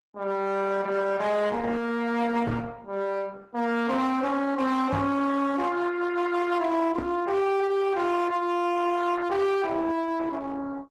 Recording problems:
codec artefacts; Opus, log-spectral distance 3 dB, nothing above 13.1 kHz
distortion; hard clipping, uneven, signal-to-distortion ratio 10 dB
microphone thump; at 2.5 s, at 5 s and at 7 s; peak +1 dB vs average level

